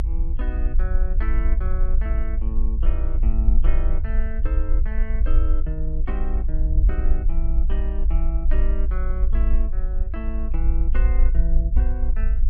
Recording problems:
low-frequency rumble; below 52 Hz, strongest tone 22 Hz, SNR -12 dB

